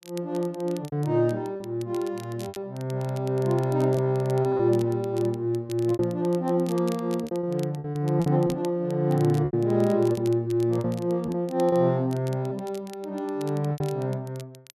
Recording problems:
crackle; vinyl, SNR 23 dB
packet loss; 7% of the sound replaced, filled with repeated pitch periods

